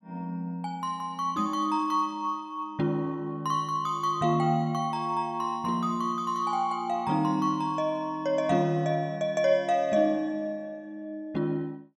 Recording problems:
none

